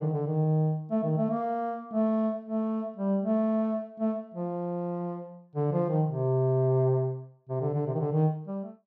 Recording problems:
none

